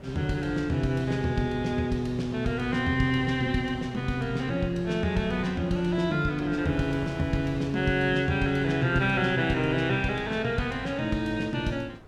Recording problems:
wind on the microphone; below 650 Hz, SNR 20 dB

